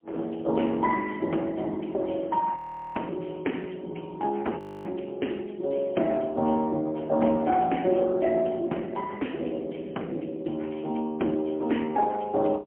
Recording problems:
telephone audio; 190 Hz to 3.1 kHz, AMR-NB, then MP3
frozen audio; at 2.5 s and at 4.5 s

